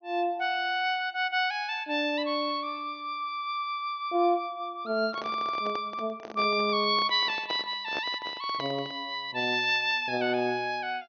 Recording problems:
low-pass filter; nothing above 6.3 kHz
handling noise; from 5 to 9 s; peak -4 dB vs average level

